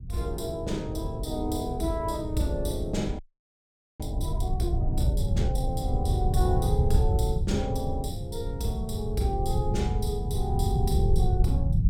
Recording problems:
low-frequency rumble; below 110 Hz, SNR -2 dB
frozen audio; at 3 s for 1 s

